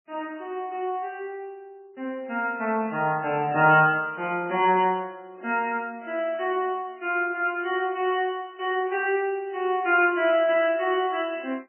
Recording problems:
lossy codec; MP3, log-spectral distance 2 dB, nothing above 2.4 kHz

